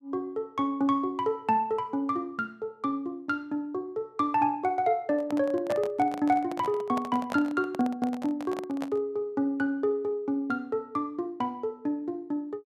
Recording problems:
microphone handling noise; from 5 to 9 s; peak -2 dB vs average level

